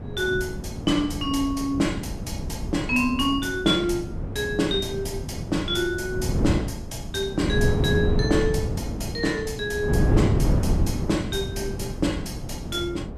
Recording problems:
wind noise; below 230 Hz, SNR 2 dB

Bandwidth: 15.5 kHz